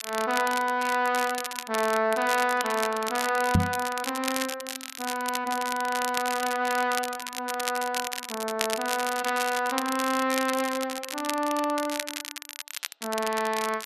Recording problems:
crackling; vinyl, SNR 7 dB
microphone thump; at 3.5 s; peak +8 dB vs average level

